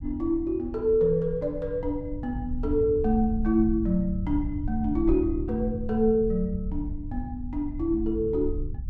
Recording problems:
low-frequency rumble; below 86 Hz, SNR 9 dB

